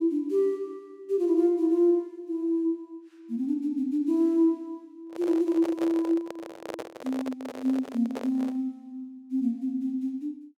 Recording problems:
microphone handling noise; from 5 to 8.5 s; peak -5 dB vs average level

